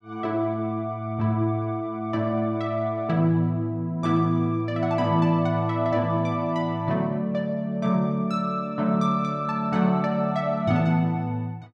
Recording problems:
none

